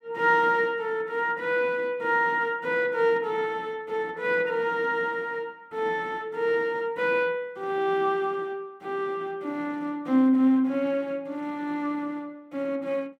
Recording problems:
none

